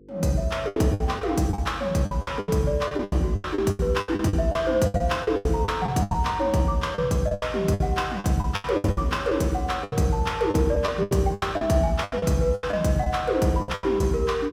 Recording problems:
hum; 50 Hz, harmonics up to 500 Hz, SNR 26 dB
packet loss; 17% of the sound replaced, filled with the last packet

